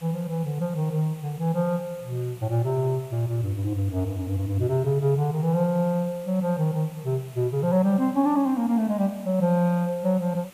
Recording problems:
background hiss; SNR 24 dB

